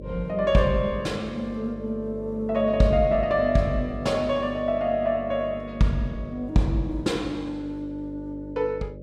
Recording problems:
hum; 50 Hz, harmonics up to 600 Hz, SNR 13 dB

